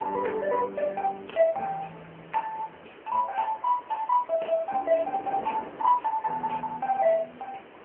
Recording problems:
telephone audio; 320 Hz to 3.3 kHz, AMR-NB
hiss; SNR 24 dB
wind on the microphone; below 790 Hz, SNR 20 dB

